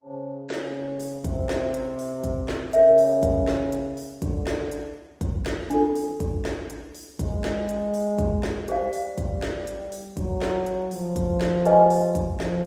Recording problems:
lossy codec; Opus, log-spectral distance 3 dB

